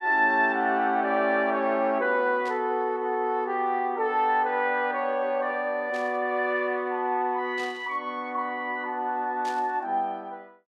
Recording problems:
static burst; 4 times, first at 2.5 s; peak -12 dB vs average level

